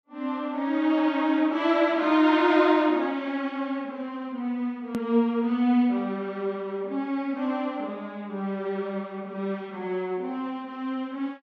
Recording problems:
edit click; at 5 s

